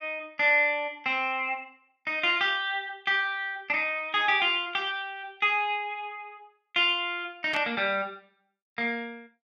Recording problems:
burst of static; at 7.5 s; peak -6 dB vs average level

